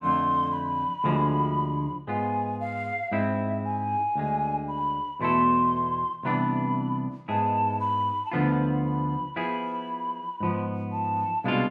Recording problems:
none

